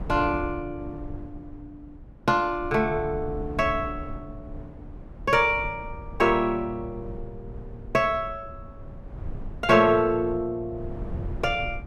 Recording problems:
rumble; below 130 Hz, SNR 15 dB

